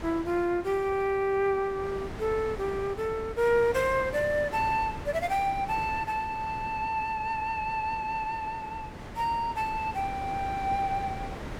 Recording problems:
wind noise; below 870 Hz, SNR 12 dB

